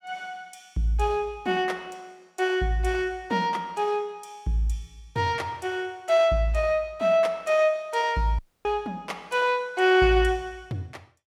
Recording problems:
dropout; at 8.5 s

